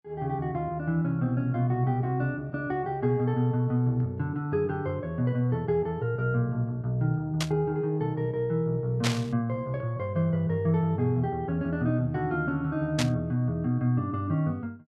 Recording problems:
burst of static; at 7.5 s, at 9 s and at 13 s; peak +4 dB vs average level

